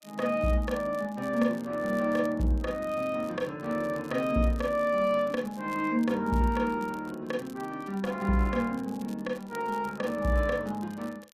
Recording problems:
lossy codec; Opus, log-spectral distance 2 dB
crackling; vinyl, SNR 26 dB

